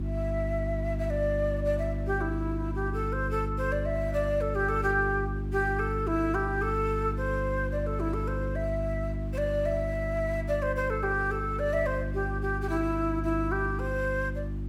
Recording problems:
electrical hum; 50 Hz, harmonics up to 350 Hz, SNR 3 dB
hiss; SNR 26 dB

